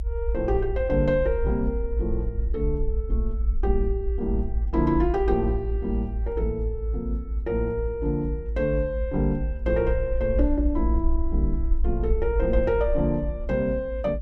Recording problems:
low-frequency rumble; below 58 Hz, strongest tone 52 Hz, SNR 2 dB

